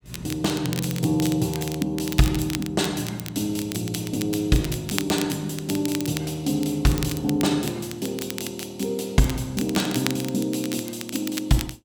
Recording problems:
crackle; vinyl, SNR 10 dB

